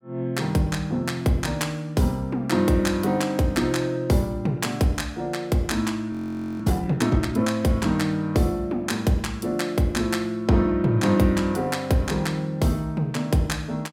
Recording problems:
audio freezing; at 6 s

